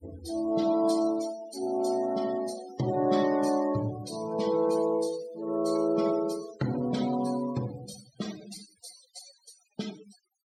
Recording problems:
denoising artefacts; signal-to-artefact ratio 15 dB

